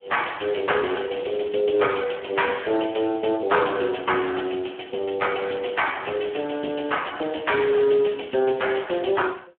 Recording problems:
phone line; 170 Hz to 3.3 kHz, Speex

